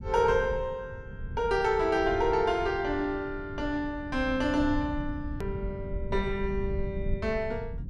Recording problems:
low-frequency rumble; below 100 Hz, SNR 9 dB
hard cut with a click; at 5.5 s

